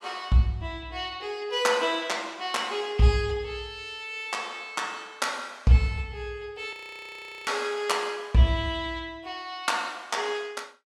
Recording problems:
frozen audio; at 6.5 s for 0.5 s

